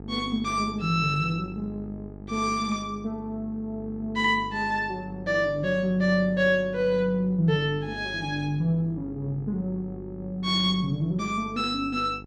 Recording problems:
hum; 50 Hz, harmonics up to 900 Hz, SNR 15 dB

